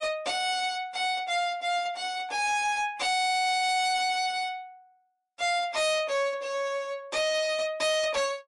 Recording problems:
lossy compression; MP3, log-spectral distance 2 dB
distortion; hard clipping, signal-to-distortion ratio 10 dB

